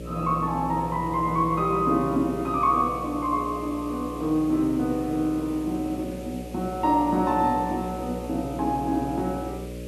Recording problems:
mains hum; 60 Hz, harmonics up to 600 Hz, SNR 12 dB
hiss; SNR 23 dB

